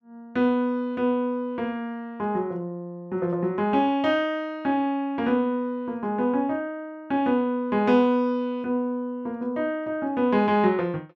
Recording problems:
none

